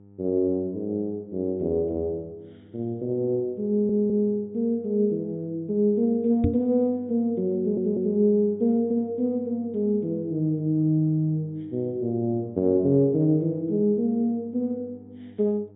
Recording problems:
treble cut off; nothing above 4 kHz
hum; 50 Hz, harmonics up to 900 Hz, SNR 25 dB
stutter; at 3.5 s and at 7.5 s
microphone thump; at 6.5 s; peak +4 dB vs average level

